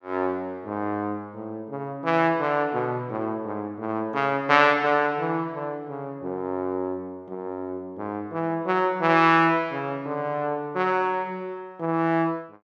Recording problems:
none

